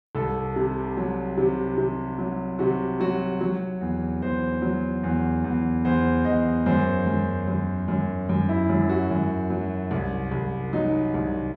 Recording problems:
none

